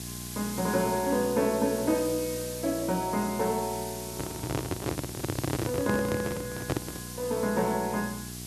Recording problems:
electrical hum; 60 Hz, harmonics up to 780 Hz, SNR 13 dB
background hiss; slope +3 dB per octave, SNR 10 dB
microphone handling noise; from 4 to 7 s; peak +4 dB vs average level

